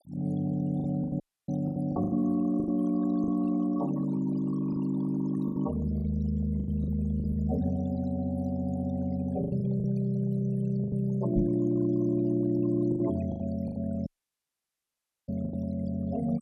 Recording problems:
noise reduction artefacts; signal-to-artefact ratio 18 dB
lost packets; 9% of the sound replaced, filled with the last packet
audio cutting out; at 1 s and at 14 s for 1 s
microphone bump; at 11 s; peak +4 dB vs average level

